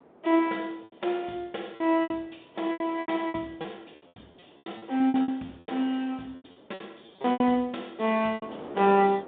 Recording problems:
phone line; 170 Hz to 3.7 kHz, G.726
wind noise; below 730 Hz, SNR 22 dB
packet loss; 14% of the sound replaced, filled with repeated pitch periods

